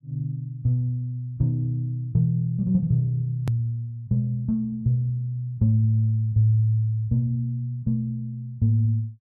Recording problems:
hard cut with a click; at 3.5 s

